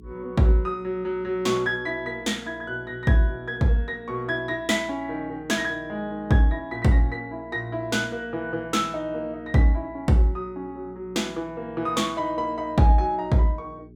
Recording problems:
electrical hum; 60 Hz, harmonics up to 420 Hz, SNR 23 dB

